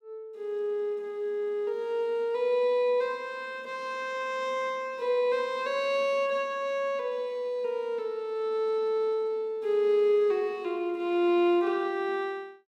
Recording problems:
none

